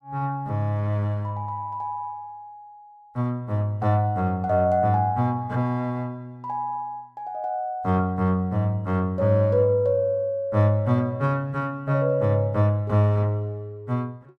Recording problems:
none

